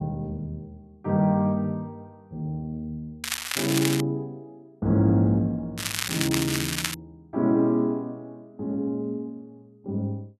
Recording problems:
crackle; at 3 s and from 6 to 7 s; loose cable, SNR 2 dB

